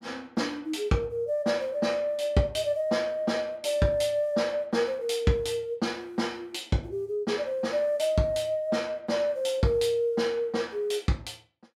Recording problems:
none

